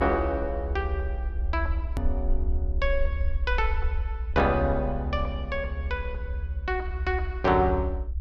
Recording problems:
low-frequency rumble; below 72 Hz, SNR 2 dB
edit click; at 2 s

